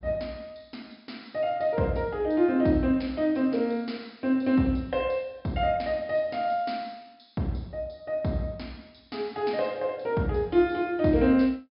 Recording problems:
low-pass filter; nothing above 5.5 kHz

